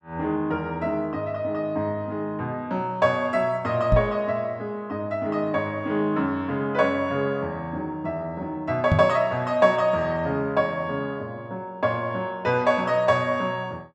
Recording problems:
microphone bump; at 4 s and at 9 s; peak +7 dB vs average level

